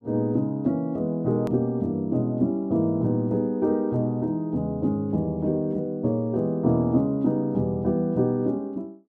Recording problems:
edit click; at 1.5 s

